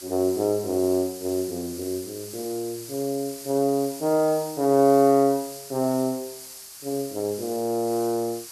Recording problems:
hiss; SNR 14 dB

